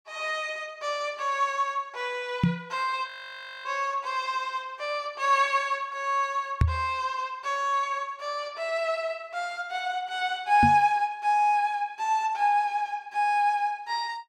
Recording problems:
microphone bump; at 2.5 s, at 6.5 s and at 11 s; peak +8 dB vs average level
audio freezing; at 3 s for 0.5 s

